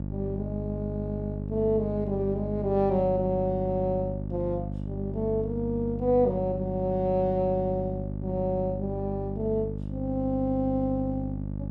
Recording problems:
mains hum; 50 Hz, harmonics up to 650 Hz, SNR 5 dB

